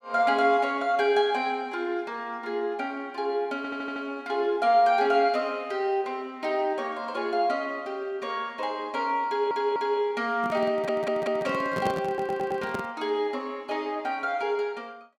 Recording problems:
stutter; 4 times, first at 3.5 s
microphone handling noise; from 10 to 13 s; peak 0 dB vs average level

